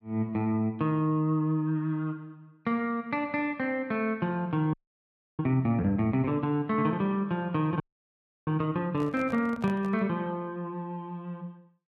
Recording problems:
audio freezing; at 4.5 s for 0.5 s and at 8 s for 0.5 s
microphone handling noise; from 9 to 10 s; peak -10 dB vs average level

